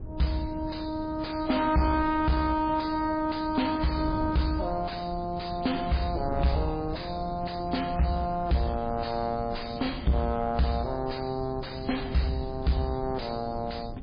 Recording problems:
codec artefacts; MP3, log-spectral distance 6 dB, nothing above 4.4 kHz
distorted audio; soft clipping, signal-to-distortion ratio 5 dB
wind noise; below 200 Hz, SNR 12 dB

